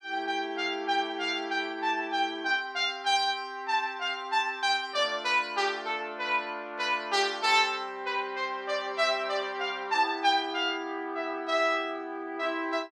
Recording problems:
none

